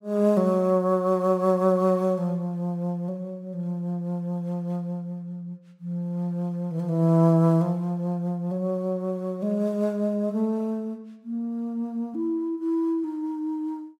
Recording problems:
none

